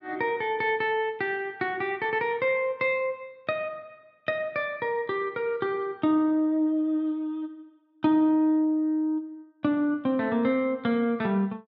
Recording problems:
none

